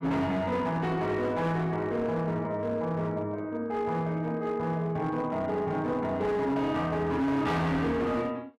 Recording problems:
distortion; hard clipping, signal-to-distortion ratio 11 dB

